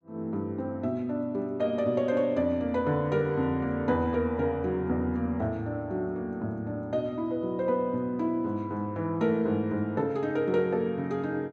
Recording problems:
none

